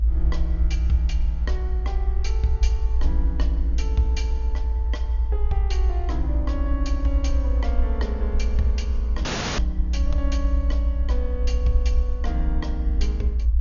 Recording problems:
low-pass filter; nothing above 6.9 kHz
low-frequency rumble; below 58 Hz, strongest tone 56 Hz, SNR -8 dB
wind noise; below 590 Hz, SNR 21 dB
audio cutting out; at 9.5 s

